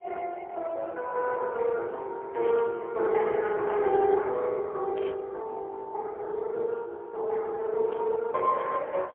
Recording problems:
phone line; 340 Hz to 2.1 kHz, AMR-NB, then MP3
burst of static; at 2.5 s, at 5 s and at 8 s; peak -12 dB vs average level

